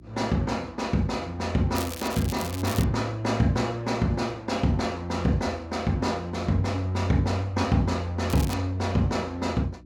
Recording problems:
electrical hum; 60 Hz, harmonics up to 360 Hz, SNR 23 dB
crackling; from 2 to 3 s and at 8.5 s; loose cable, SNR 12 dB

